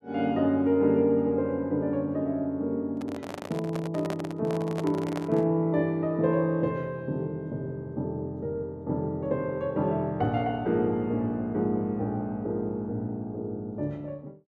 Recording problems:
microphone handling noise; from 3 to 5.5 s; peak -3 dB vs average level

